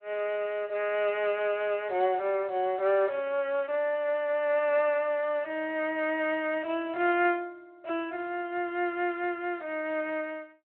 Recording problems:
telephone audio; 320 Hz to 3.1 kHz, Speex

